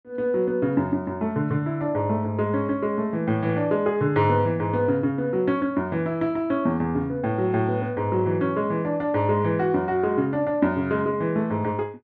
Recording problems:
none

